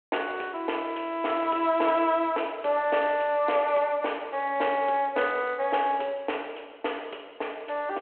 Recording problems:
phone line; 300 Hz to 3.4 kHz, G.726

